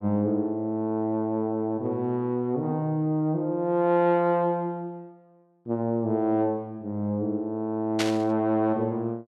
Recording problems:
burst of static; at 8 s; peak +2 dB vs average level

